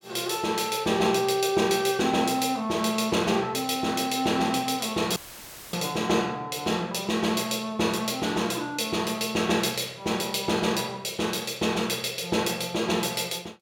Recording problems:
dropout; at 5 s for 0.5 s; filled with static

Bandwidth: 17 kHz